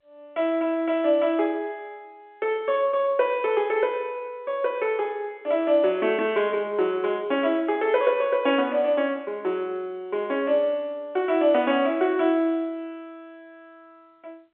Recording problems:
telephone audio; 260 Hz to 3.5 kHz, G.711

